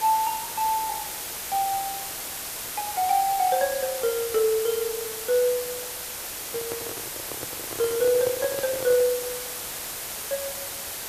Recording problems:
background hiss; slope -1 dB per octave, SNR 5 dB
microphone handling noise; from 6.5 to 9 s; peak -4 dB vs average level

